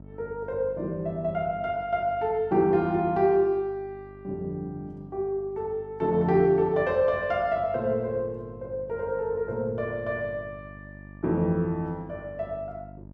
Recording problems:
electrical hum; 50 Hz, harmonics up to 700 Hz, SNR 20 dB

